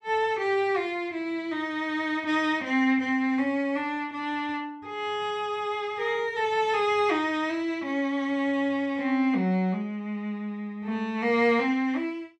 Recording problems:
none

